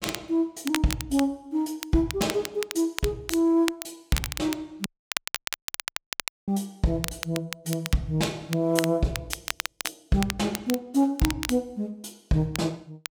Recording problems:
crackling; vinyl, SNR 7 dB
audio cutting out; at 5 s for 1.5 s

